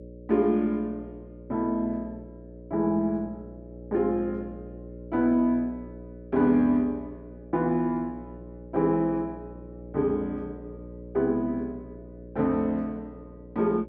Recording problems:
hum; 60 Hz, harmonics up to 600 Hz, SNR 16 dB

